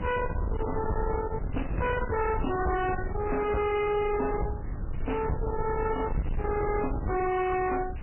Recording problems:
codec artefacts; MP3, log-spectral distance 7 dB, nothing above 2.7 kHz
distortion; hard clipping, signal-to-distortion ratio 6 dB
background hiss; SNR 24 dB
wind noise; below 410 Hz, SNR 5 dB

